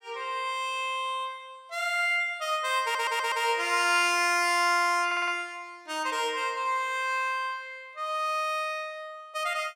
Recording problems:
audio stuttering; at 3 s and at 5 s

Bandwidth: 16.5 kHz